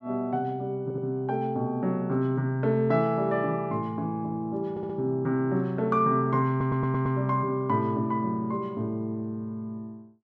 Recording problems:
audio stuttering; at 1 s, at 4.5 s and at 6.5 s

